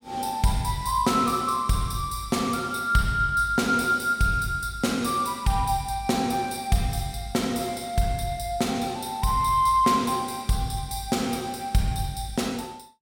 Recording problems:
none

